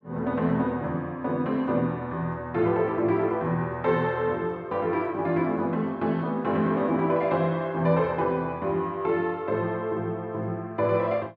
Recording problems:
none

